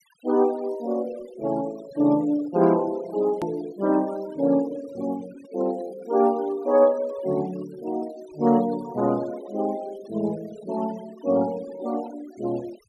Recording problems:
denoising artefacts; signal-to-artefact ratio 21 dB
click at an edit; at 3.5 s

